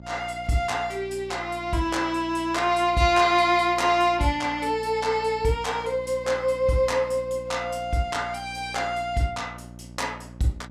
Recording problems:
electrical hum; 60 Hz, harmonics up to 900 Hz, SNR 19 dB

